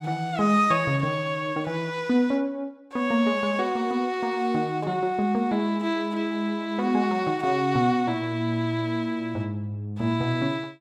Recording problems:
none

